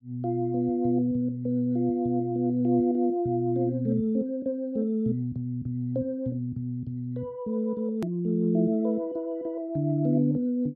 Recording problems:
edit click; at 8 s

